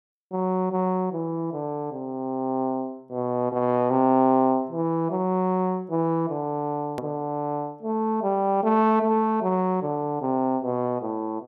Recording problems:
hard cut with a click; at 7 s

